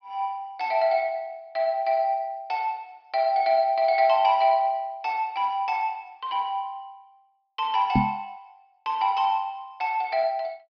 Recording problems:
low-pass filter; nothing above 5.5 kHz
microphone thump; at 8 s; peak +6 dB vs average level

